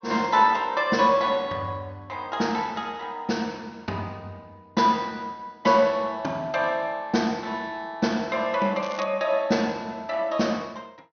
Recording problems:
low-pass filter; nothing above 6.4 kHz
crackle; at 9 s; loose cable, SNR 19 dB

